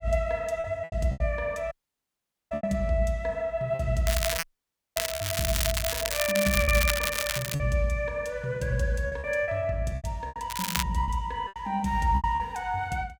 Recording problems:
lost packets; 8% of the sound replaced, filled with repeated pitch periods
dropout; at 1.5 s for 1 s and at 4.5 s for 0.5 s
crackle; from 4 to 7.5 s and at 11 s; loose cable, SNR 1 dB

